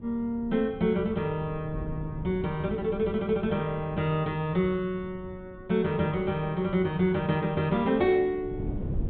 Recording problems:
low-pass filter; nothing above 4 kHz
wind on the microphone; below 200 Hz, SNR 14 dB

